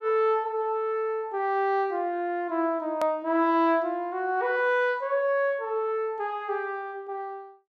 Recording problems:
edit click; at 3 s

